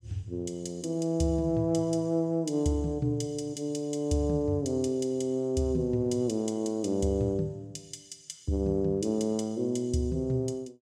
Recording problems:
none

